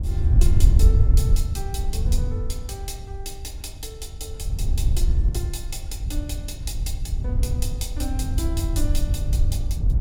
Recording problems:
wind noise; below 82 Hz, SNR -10 dB

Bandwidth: 16.5 kHz